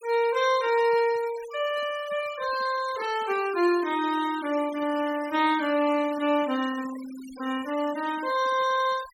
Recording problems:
denoising artefacts; signal-to-artefact ratio 17 dB

